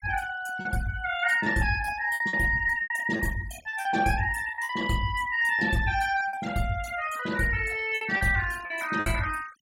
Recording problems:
denoising artefacts; signal-to-artefact ratio 18 dB
lost packets; 9% of the sound replaced, filled with repeated pitch periods

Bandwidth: 16 kHz